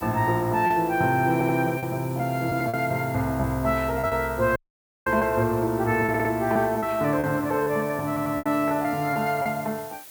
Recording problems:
hiss; slope 0 dB per octave, SNR 18 dB
lost packets; 7% of the sound replaced, filled with repeated pitch periods
audio stuttering; at 1.5 s, at 6 s and at 8 s
audio cutting out; at 4.5 s for 0.5 s

